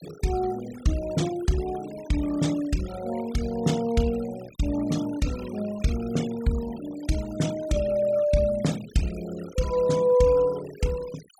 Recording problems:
noise reduction artefacts; signal-to-artefact ratio 17 dB

